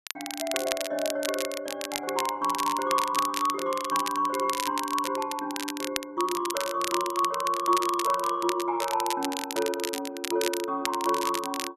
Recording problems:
crackle; vinyl, SNR 6 dB

